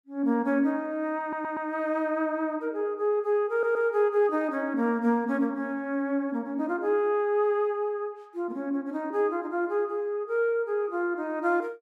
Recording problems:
stutter; at 1 s and at 3.5 s

